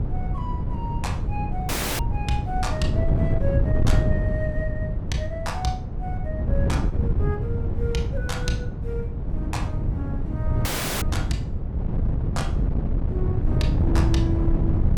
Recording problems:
wind noise; below 140 Hz, SNR -6 dB
audio cutting out; at 1.5 s and at 11 s

